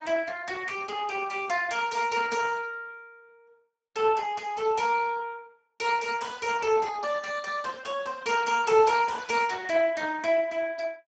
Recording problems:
codec artefacts; Speex, log-spectral distance 4 dB, nothing above 7.3 kHz

